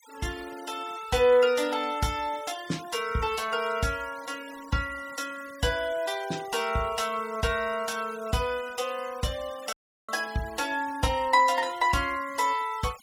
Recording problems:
noise reduction artefacts; signal-to-artefact ratio 18 dB
dropout; at 9.5 s

